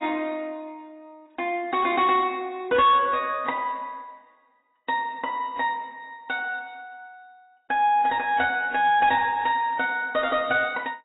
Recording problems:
lossy compression; AAC, log-spectral distance 2 dB, nothing above 3.4 kHz
distorted audio; soft clipping, signal-to-distortion ratio 12 dB

